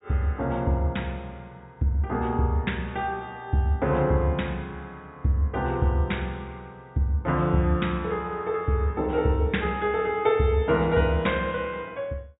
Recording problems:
treble cut off; nothing above 4 kHz

